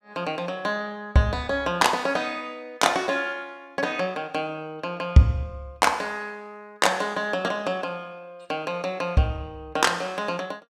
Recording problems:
none

